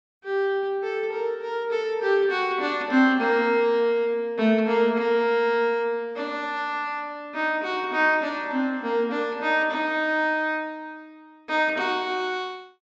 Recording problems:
low-pass filter; nothing above 8 kHz

